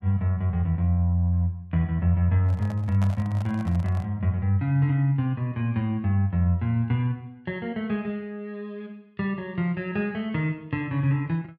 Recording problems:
microphone handling noise; from 2.5 to 4 s; peak -8 dB vs average level

